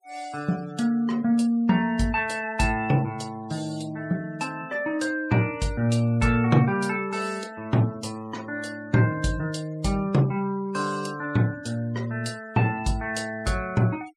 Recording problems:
denoising artefacts; signal-to-artefact ratio 23 dB

